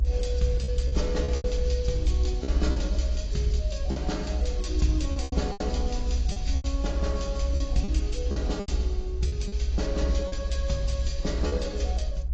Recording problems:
lossy codec; AAC, log-spectral distance 3 dB, nothing above 7.3 kHz
low-frequency rumble; below 64 Hz, strongest tone 62 Hz, SNR -3 dB
packet loss; 8% of the sound replaced, filled with repeated pitch periods

